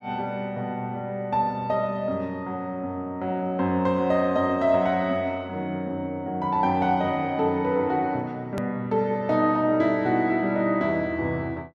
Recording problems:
click at an edit; at 8.5 s

